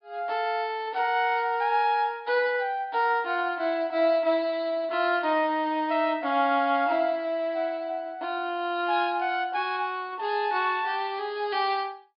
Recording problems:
treble missing; nothing above 5.5 kHz

